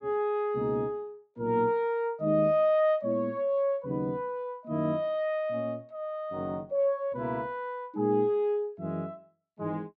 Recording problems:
none

